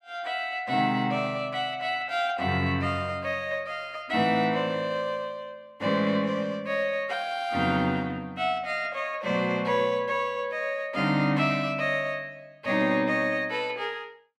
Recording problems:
none

